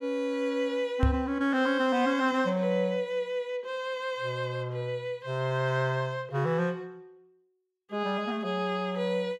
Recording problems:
knock on the microphone; at 1 s; peak +7 dB vs average level

